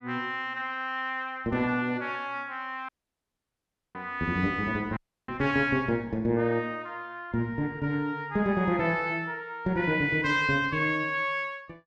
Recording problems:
dropout; at 3 s for 1 s and at 5 s

